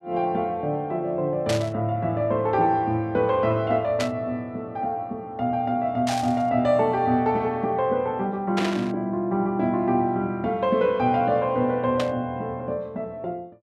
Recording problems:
burst of static; 5 times, first at 1.5 s; peak -1 dB vs average level

